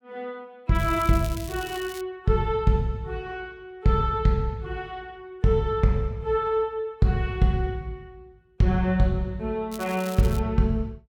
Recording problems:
crackle; from 0.5 to 2 s and at 9.5 s; loose cable, SNR 17 dB

